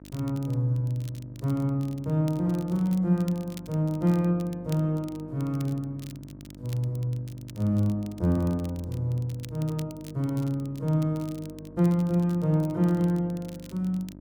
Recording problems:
hum; 50 Hz, harmonics up to 950 Hz, SNR 18 dB
crackle; vinyl, SNR 24 dB

